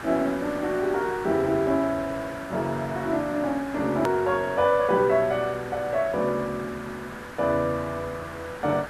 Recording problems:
hiss; SNR 13 dB
hard cut with a click; at 4 s

